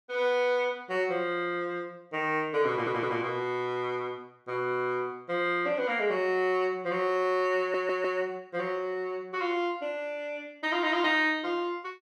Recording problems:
audio stuttering; at 2.5 s and at 7.5 s

